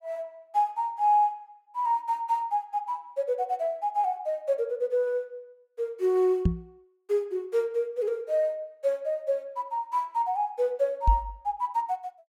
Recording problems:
microphone thump; at 6.5 s and at 11 s; peak +8 dB vs average level

